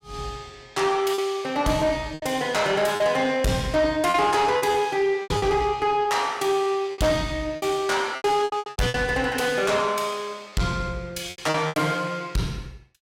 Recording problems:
distortion; soft clipping, signal-to-distortion ratio 11 dB
packet loss; 9% of the sound replaced, filled with repeated pitch periods

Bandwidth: 16.5 kHz